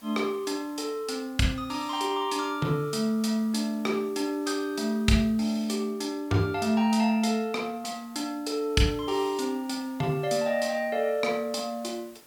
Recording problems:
hiss; slope -3 dB per octave, SNR 25 dB

